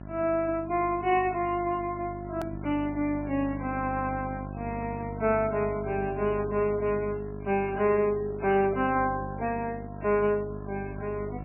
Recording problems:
codec artefacts; MP3, log-spectral distance 3 dB, nothing above 2.4 kHz
electrical hum; 50 Hz, harmonics up to 1.1 kHz, SNR 11 dB
hard cut with a click; at 2.5 s

